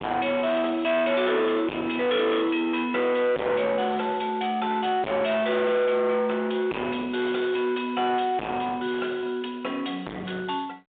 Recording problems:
phone line; 540 Hz to 2.6 kHz, G.726
distortion; hard clipping, signal-to-distortion ratio 4 dB

